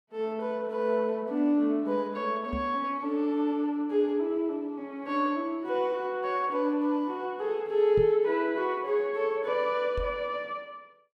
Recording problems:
knock on the microphone; at 2.5 s, at 8 s and at 10 s; peak -2 dB vs average level

